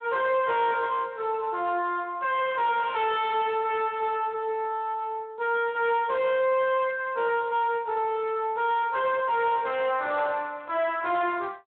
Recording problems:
telephone audio; 300 Hz to 3.6 kHz, Speex
distorted audio; soft clipping, signal-to-distortion ratio 7 dB

